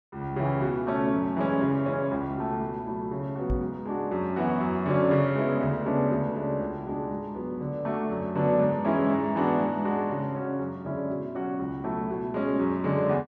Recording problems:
knock on the microphone; at 3.5 s; peak +1 dB vs average level

